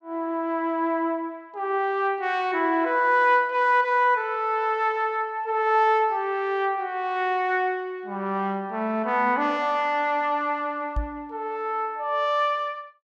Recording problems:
knock on the microphone; at 11 s; peak -1 dB vs average level

